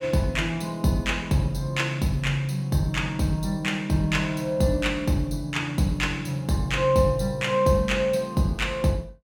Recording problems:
none

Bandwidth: 17 kHz